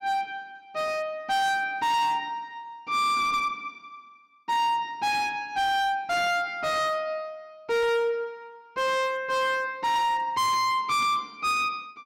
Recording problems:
distorted audio; hard clipping, signal-to-distortion ratio 7 dB

